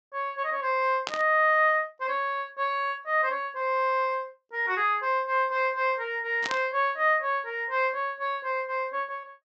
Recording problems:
treble cut off; nothing above 8 kHz
burst of static; at 1 s and at 6.5 s; peak -1 dB vs average level

